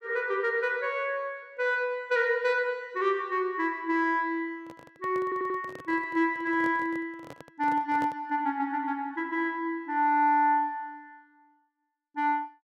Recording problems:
microphone handling noise; from 4.5 to 8.5 s; peak -8 dB vs average level
audio stuttering; at 5 s

